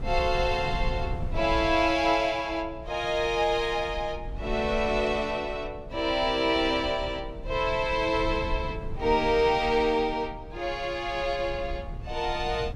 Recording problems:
wind on the microphone; below 98 Hz, SNR 12 dB

